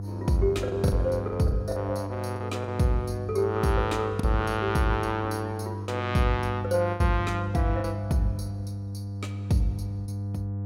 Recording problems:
hum; 50 Hz, harmonics up to 700 Hz, SNR 6 dB
lost packets; 5% of the sound replaced, filled with the last packet

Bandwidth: 16 kHz